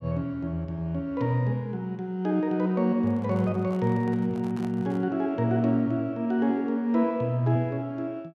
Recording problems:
microphone handling noise; from 3 to 5 s; peak -12 dB vs average level

